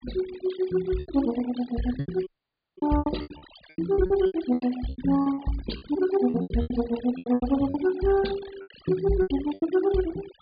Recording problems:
low-pass filter; nothing above 4.8 kHz
noise reduction artefacts; signal-to-artefact ratio 16 dB
lost packets; 16% of the sound replaced, filled with repeated pitch periods
dropout; at 2.5 s for 0.5 s

